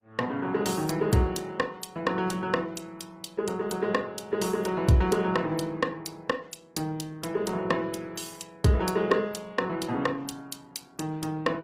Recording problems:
lossy compression; Opus, log-spectral distance 3 dB, nothing above 15.5 kHz

